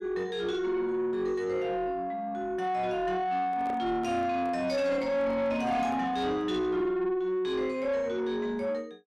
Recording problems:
distortion; soft clipping, signal-to-distortion ratio 10 dB
handling noise; from 3.5 to 6.5 s; peak -6 dB vs average level

